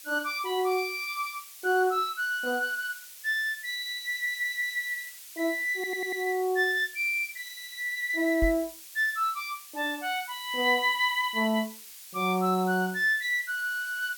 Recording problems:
background hiss; slope +4 dB per octave, SNR 16 dB
stutter; at 4 s and at 5.5 s
microphone thump; at 8.5 s; peak +1 dB vs average level

